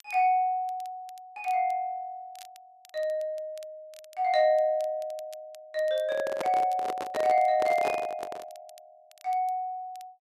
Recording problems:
crackling; vinyl, SNR 28 dB
microphone handling noise; from 6 to 8.5 s; peak -1 dB vs average level

